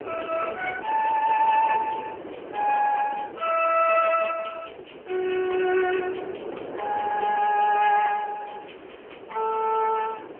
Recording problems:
phone line; 260 Hz to 3.1 kHz, AMR-NB
background hiss; SNR 29 dB
wind noise; below 610 Hz, SNR 15 dB

